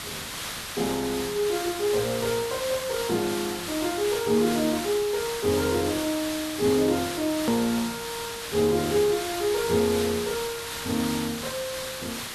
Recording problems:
background hiss; slope 0 dB per octave, SNR 6 dB
click at an edit; at 7.5 s

